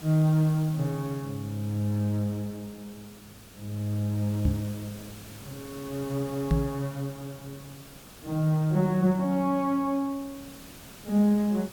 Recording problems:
hiss; slope -3 dB per octave, SNR 19 dB
microphone bump; at 4.5 s and at 6.5 s; peak +6 dB vs average level

